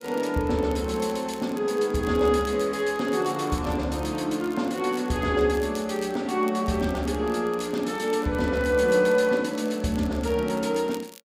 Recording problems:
crackling; vinyl, SNR 24 dB

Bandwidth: 15.5 kHz